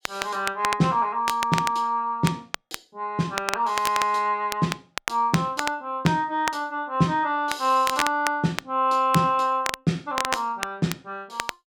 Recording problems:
crackling; vinyl, SNR 8 dB

